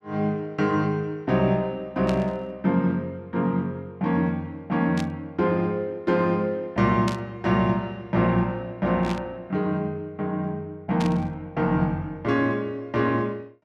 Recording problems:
static burst; 5 times, first at 2 s; peak -3 dB vs average level

